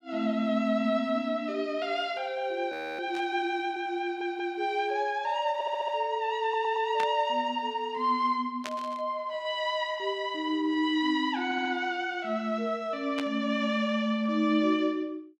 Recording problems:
frozen audio; at 2.5 s
static burst; 4 times, first at 3 s; peak -3 dB vs average level
audio stuttering; 4 times, first at 4 s

